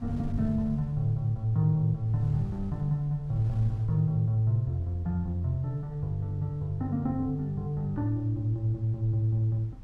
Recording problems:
wind on the microphone; below 98 Hz, SNR 16 dB

